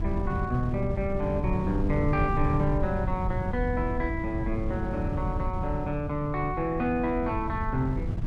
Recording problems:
wind on the microphone; below 130 Hz, SNR 3 dB

